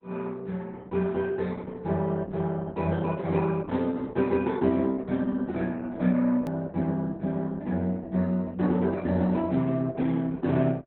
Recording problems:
lossy compression; Opus, log-spectral distance 3 dB, nothing above 19.5 kHz
click at an edit; at 6.5 s

